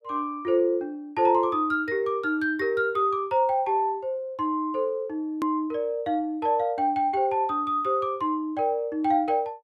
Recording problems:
edit click; at 5.5 s

